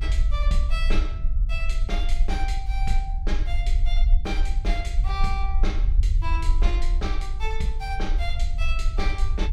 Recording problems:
low-frequency rumble; below 48 Hz, SNR -7 dB

